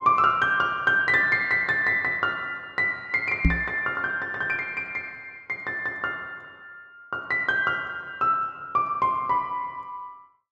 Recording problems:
microphone thump; at 3.5 s; peak +7 dB vs average level

